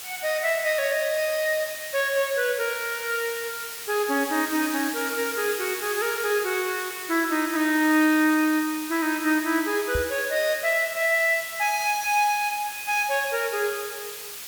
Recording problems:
hiss; slope +2 dB per octave, SNR 9 dB
knock on the microphone; at 10 s; peak -3 dB vs average level

